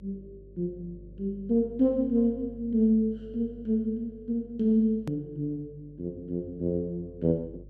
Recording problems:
hum; 50 Hz, harmonics up to 550 Hz, SNR 22 dB
edit click; at 5 s

